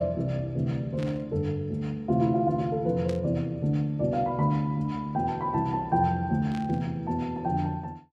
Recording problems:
static burst; at 1 s, at 3 s and at 6.5 s; peak -11 dB vs average level

